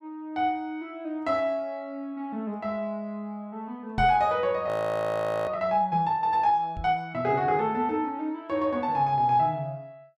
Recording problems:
microphone thump; at 4 s and at 7 s; peak -2 dB vs average level
frozen audio; at 4.5 s for 1 s

